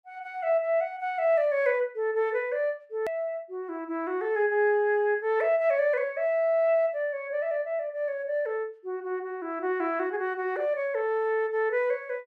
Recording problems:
edit click; at 3 s

